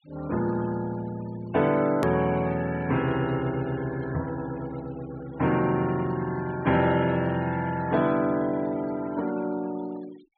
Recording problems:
treble missing; nothing above 4.4 kHz
noise reduction artefacts; signal-to-artefact ratio 21 dB
edit click; at 2 s

